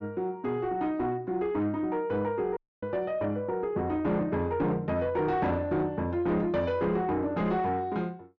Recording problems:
treble missing; nothing above 7 kHz
distorted audio; soft clipping, signal-to-distortion ratio 11 dB
audio cutting out; at 2.5 s

